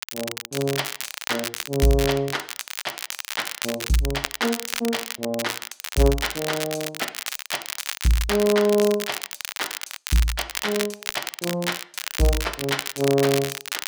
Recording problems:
crackle; vinyl, SNR 5 dB

